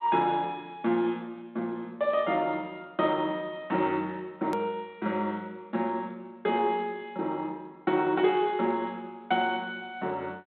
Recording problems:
phone line; 130 Hz to 3.8 kHz, G.726
click at an edit; at 4.5 s

